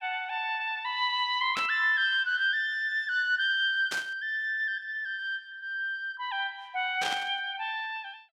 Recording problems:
burst of static; at 1.5 s, at 4 s and at 7 s; peak -1 dB vs average level

